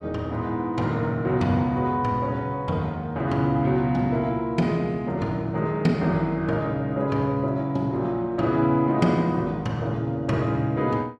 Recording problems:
none

